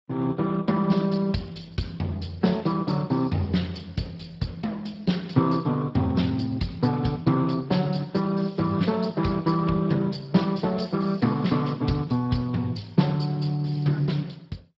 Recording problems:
lossy compression; MP2, then Speex, log-spectral distance 5 dB

